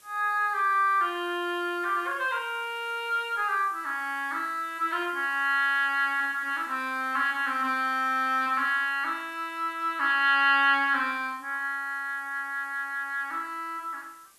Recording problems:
hiss; slope 0 dB per octave, SNR 27 dB

